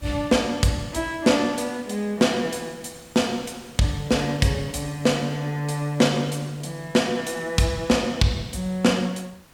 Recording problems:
hiss; slope -3 dB per octave, SNR 26 dB

